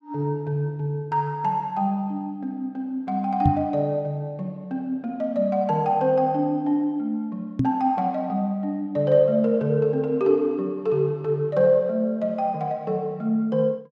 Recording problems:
knock on the microphone; at 3.5 s and at 7.5 s; peak +7 dB vs average level

